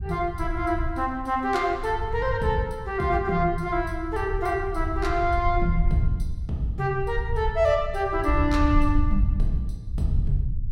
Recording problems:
low-frequency rumble; below 78 Hz, SNR 4 dB

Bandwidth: 16.5 kHz